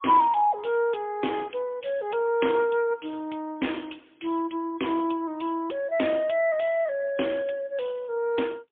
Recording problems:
telephone audio; 220 Hz to 3.4 kHz, AMR-NB, then MP3

